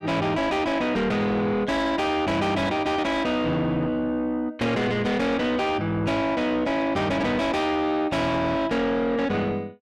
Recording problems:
distortion; soft clipping, signal-to-distortion ratio 7 dB

